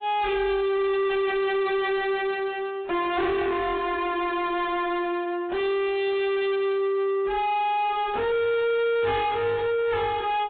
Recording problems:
treble missing; nothing above 3.9 kHz
codec artefacts; AAC, log-spectral distance 2 dB
distortion; soft clipping, signal-to-distortion ratio 6 dB

